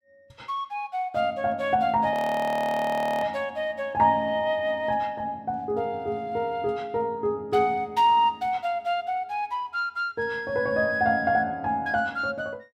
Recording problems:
frozen audio; at 2 s for 1 s

